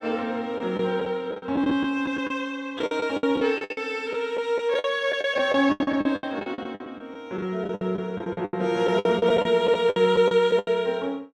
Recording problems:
packet loss; 16% of the sound replaced, filled with the last packet

